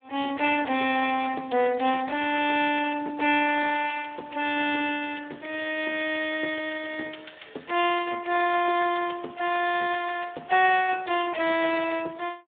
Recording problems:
telephone audio; 240 Hz to 3.5 kHz, Speex

